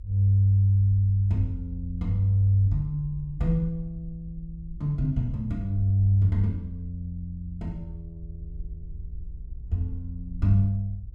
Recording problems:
low-frequency rumble; below 60 Hz, SNR 15 dB

